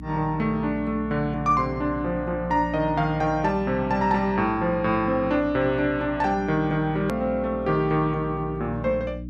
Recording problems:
hum; 60 Hz, harmonics up to 300 Hz, SNR 13 dB
click at an edit; at 7 s

